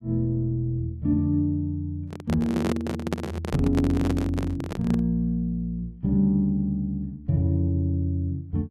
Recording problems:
handling noise; from 2 to 5 s; peak +3 dB vs average level

